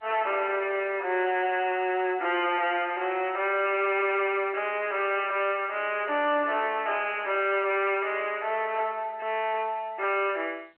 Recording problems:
phone line; 300 Hz to 3.1 kHz, G.711
distortion; soft clipping, signal-to-distortion ratio 7 dB

